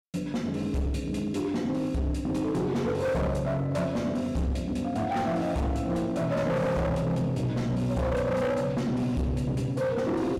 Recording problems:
distortion; hard clipping, signal-to-distortion ratio 7 dB

